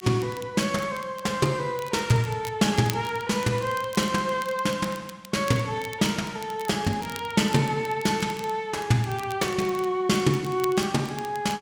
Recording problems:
crackling; vinyl, SNR 18 dB

